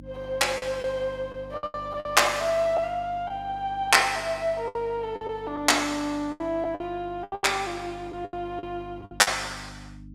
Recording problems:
hum; 50 Hz, harmonics up to 300 Hz, SNR 20 dB
packet loss; 10% of the sound replaced, filled with the last packet

